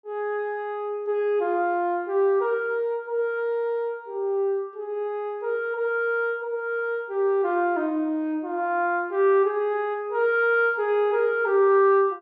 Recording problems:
none

